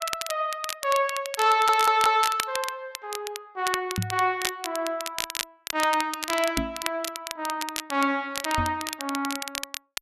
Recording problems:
crackle; vinyl, SNR 7 dB
stutter; at 1.5 s
microphone thump; at 4 s, at 6.5 s and at 8.5 s; peak +2 dB vs average level

